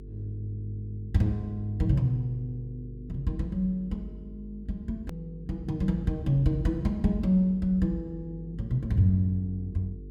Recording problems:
hum; 50 Hz, harmonics up to 450 Hz, SNR 15 dB
edit click; at 5 s

